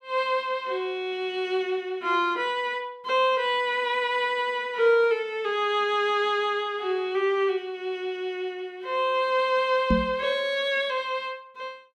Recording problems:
microphone bump; at 10 s; peak +5 dB vs average level

